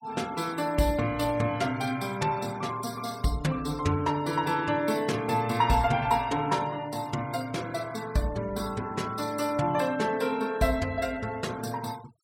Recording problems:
denoising artefacts; signal-to-artefact ratio 20 dB

